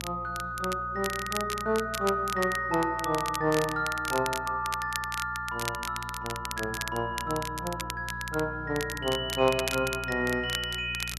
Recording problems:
electrical hum; 60 Hz, harmonics up to 420 Hz, SNR 15 dB
crackle; vinyl, SNR 9 dB

